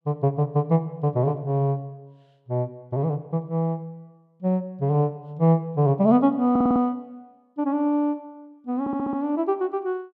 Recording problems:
audio stuttering; at 6.5 s and at 9 s

